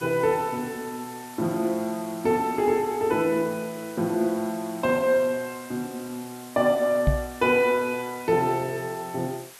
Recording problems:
background hiss; slope -1 dB per octave, SNR 18 dB
microphone bump; at 7 s; peak +6 dB vs average level

